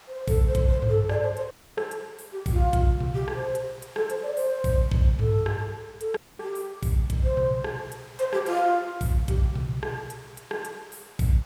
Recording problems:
hiss; SNR 24 dB
audio cutting out; at 1.5 s and at 6 s

